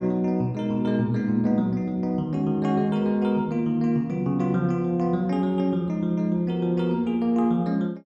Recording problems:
none

